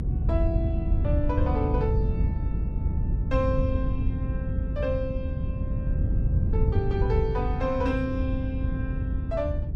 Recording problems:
low-frequency rumble; below 110 Hz, SNR -4 dB

